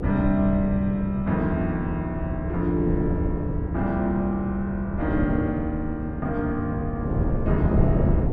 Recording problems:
low-frequency rumble; below 94 Hz, strongest tone 74 Hz, SNR 9 dB
wind on the microphone; below 260 Hz, SNR 3 dB

